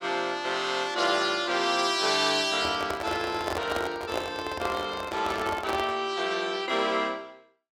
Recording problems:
microphone handling noise; from 2.5 to 6 s; peak +1 dB vs average level

